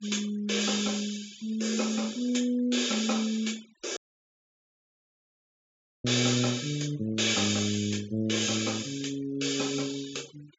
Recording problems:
low-pass filter; nothing above 8 kHz
denoising artefacts; signal-to-artefact ratio 21 dB
dropout; at 4 s for 2 s

